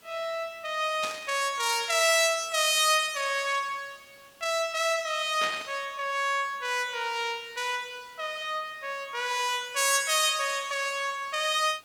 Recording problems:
hiss; slope -2 dB per octave, SNR 29 dB
static burst; at 1 s and at 5.5 s; peak -4 dB vs average level

